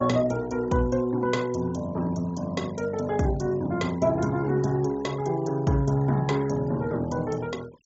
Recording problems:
treble missing; nothing above 8 kHz
noise reduction artefacts; signal-to-artefact ratio 22 dB

